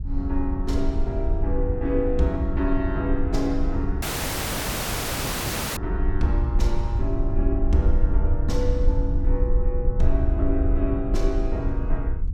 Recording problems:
low-frequency rumble; below 60 Hz, SNR -1 dB
audio cutting out; at 4 s for 2 s

